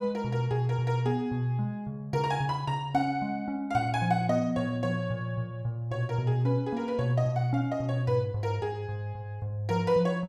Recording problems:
none

